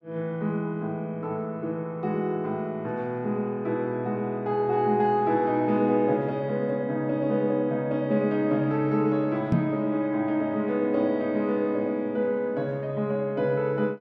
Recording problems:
microphone bump; at 9.5 s; peak +7 dB vs average level

